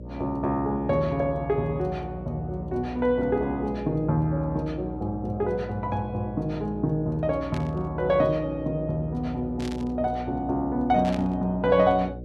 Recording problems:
electrical hum; 60 Hz, harmonics up to 600 Hz, SNR 12 dB
static burst; at 7.5 s, at 9.5 s and at 11 s; peak -8 dB vs average level

